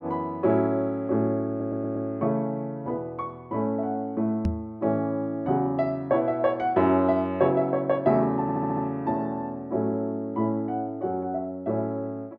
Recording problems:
audio stuttering; at 1.5 s and at 8.5 s
microphone thump; at 4.5 s; peak +3 dB vs average level

